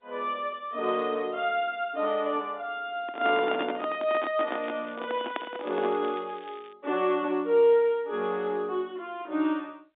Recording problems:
telephone audio; 220 Hz to 3.7 kHz, G.711
handling noise; from 3 to 6 s; peak 0 dB vs average level
crackling; from 4.5 to 6.5 s; loose cable, SNR 24 dB

